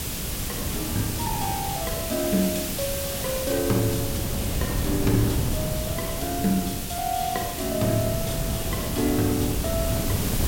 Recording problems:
hiss; slope +1 dB per octave, SNR 3 dB
wind on the microphone; below 270 Hz, SNR 3 dB

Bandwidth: 16.5 kHz